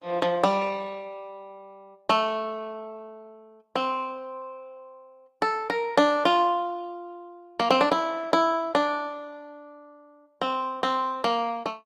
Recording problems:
lossy compression; Opus, log-spectral distance 2 dB, nothing above 15.6 kHz

